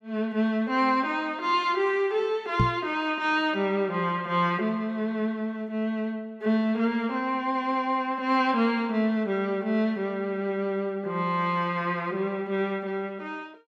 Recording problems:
microphone thump; at 2.5 s; peak +6 dB vs average level

